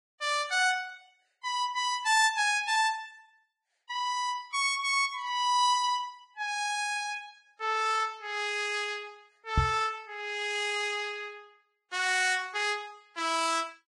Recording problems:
lossy codec; Vorbis, log-spectral distance 3 dB, nothing above 10.1 kHz
knock on the microphone; at 9.5 s; peak +6 dB vs average level

